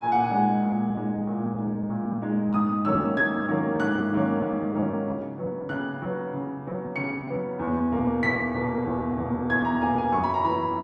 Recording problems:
lost packets; 8% of the sound replaced, filled with repeated pitch periods

